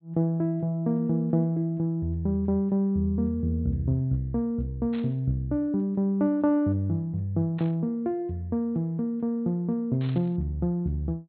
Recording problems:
treble missing; nothing above 4.2 kHz
static burst; at 5 s, at 7.5 s and at 10 s; peak -14 dB vs average level

